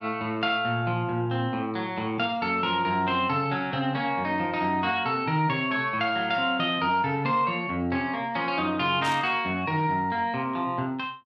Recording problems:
burst of static; at 9 s; peak -8 dB vs average level

